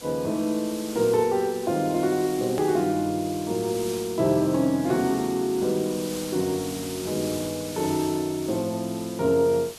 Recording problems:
background hiss; SNR 13 dB
edit click; at 2.5 s

